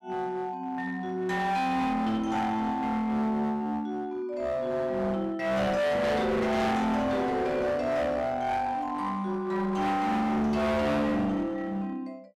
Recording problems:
distorted audio; hard clipping, uneven, signal-to-distortion ratio 5 dB

